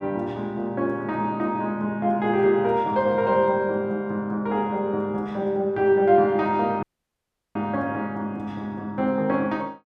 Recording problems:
audio cutting out; at 7 s for 0.5 s

